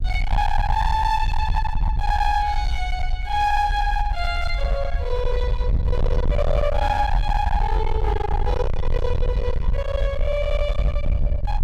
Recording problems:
distorted audio; hard clipping, uneven, signal-to-distortion ratio 7 dB
low-frequency rumble; below 70 Hz, SNR 1 dB

